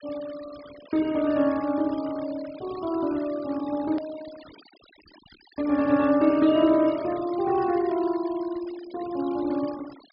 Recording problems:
treble missing; nothing above 5.5 kHz
noise reduction artefacts; signal-to-artefact ratio 21 dB
edit click; at 4 s

